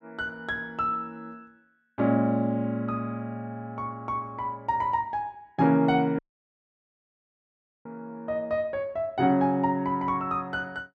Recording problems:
dropout; at 6 s for 1.5 s

